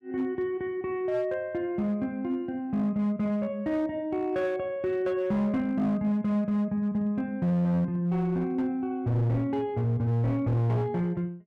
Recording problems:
distortion; hard clipping, signal-to-distortion ratio 10 dB

